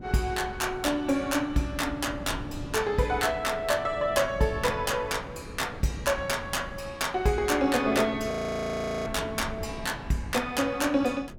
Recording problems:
wind noise; below 260 Hz, SNR 14 dB
frozen audio; at 8.5 s for 1 s

